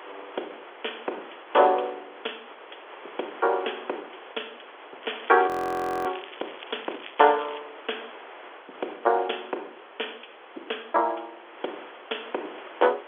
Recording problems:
phone line; 300 Hz to 3.4 kHz, G.711
background hiss; SNR 16 dB
crackle; from 5 to 7.5 s; loose cable, SNR 17 dB
frozen audio; at 5.5 s for 0.5 s

